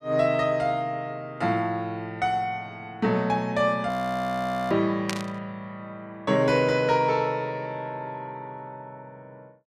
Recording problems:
audio freezing; at 4 s for 1 s
static burst; at 5 s; peak 0 dB vs average level

